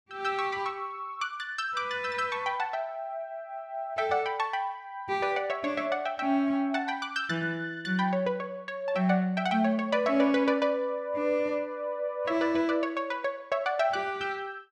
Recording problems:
none

